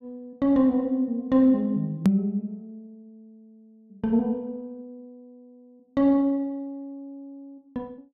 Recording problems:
hard cut with a click; at 2 s

